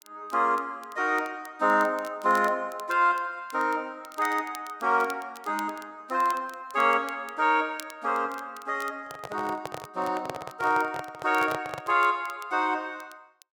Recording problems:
crackle; vinyl, SNR 23 dB
microphone handling noise; from 9 to 12 s; peak -3 dB vs average level

